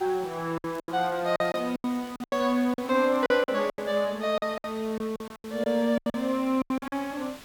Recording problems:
hiss; slope -2 dB per octave, SNR 20 dB
lost packets; 16% of the sound replaced, filled with silence
crackle; from 0.5 to 3.5 s; loose cable, SNR 28 dB

